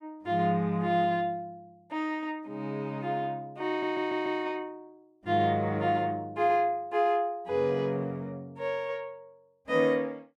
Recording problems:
stutter; at 3.5 s

